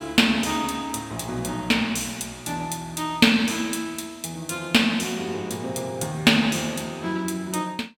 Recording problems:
none

